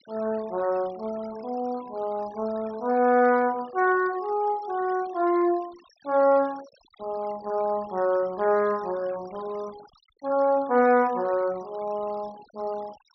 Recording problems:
treble missing; nothing above 5.8 kHz
noise reduction artefacts; signal-to-artefact ratio 23 dB

